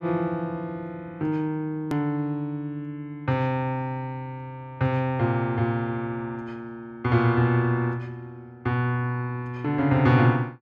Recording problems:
click at an edit; at 2 s

